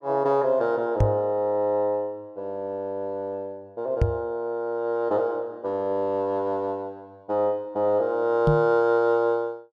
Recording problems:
microphone bump; at 1 s, at 4 s and at 8.5 s; peak +6 dB vs average level

